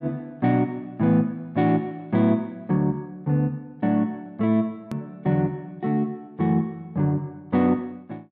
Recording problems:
click at an edit; at 5 s

